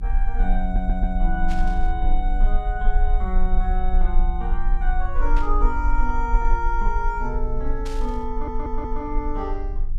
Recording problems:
hum; 50 Hz, harmonics up to 400 Hz, SNR 14 dB
rumble; below 36 Hz, strongest tone 20 Hz, SNR -3 dB
stutter; at 0.5 s and at 8.5 s
burst of static; at 1.5 s, at 5.5 s and at 8 s; peak -6 dB vs average level

